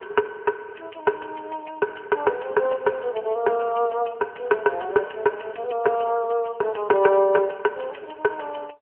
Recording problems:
phone line; 340 Hz to 2 kHz, AMR-NB

